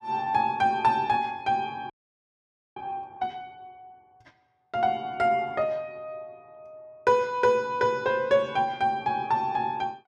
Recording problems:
audio freezing; at 2 s for 1 s

